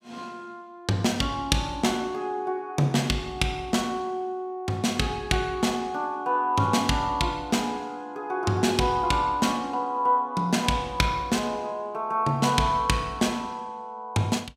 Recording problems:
none

